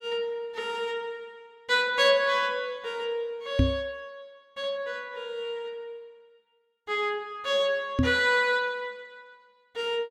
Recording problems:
knock on the microphone; at 3.5 s and at 8 s; peak +8 dB vs average level

